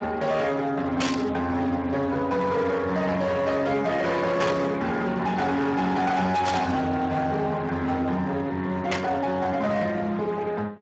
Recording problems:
codec artefacts; Speex, log-spectral distance 3 dB, nothing above 7.6 kHz
distorted audio; hard clipping, signal-to-distortion ratio 11 dB
static burst; 4 times, first at 1 s; peak +2 dB vs average level

